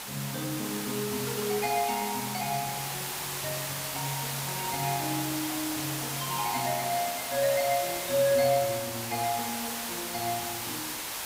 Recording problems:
background hiss; SNR 1 dB

